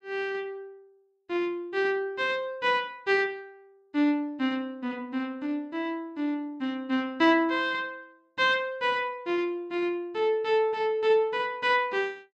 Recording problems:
none

